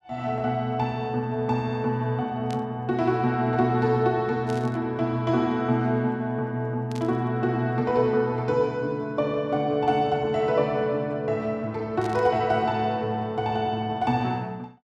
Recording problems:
burst of static; 4 times, first at 2.5 s; peak -12 dB vs average level

